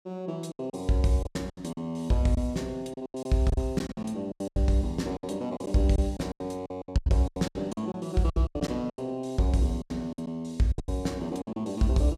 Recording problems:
lost packets; 16% of the sound replaced, filled with silence

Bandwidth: 15.5 kHz